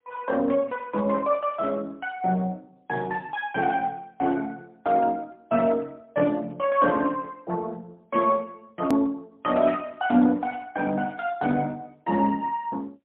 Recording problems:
phone line; 190 Hz to 3.5 kHz, AMR-NB, then MP3
hard cut with a click; at 9 s

